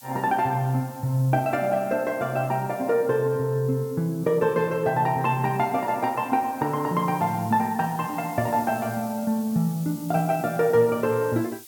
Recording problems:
background hiss; SNR 20 dB

